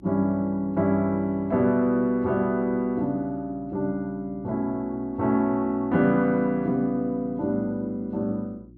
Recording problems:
hum; 60 Hz, harmonics up to 360 Hz, SNR 24 dB

